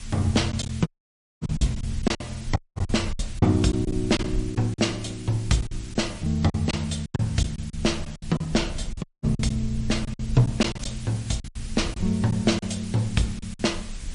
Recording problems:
lossy compression; MP3, log-spectral distance 6 dB, nothing above 9 kHz
hiss; slope +2 dB per octave, SNR 18 dB
low-frequency rumble; below 66 Hz, SNR 13 dB
packet loss; 10% of the sound replaced, filled with silence
dropout; at 1 s for 0.5 s, at 2.5 s and at 9 s

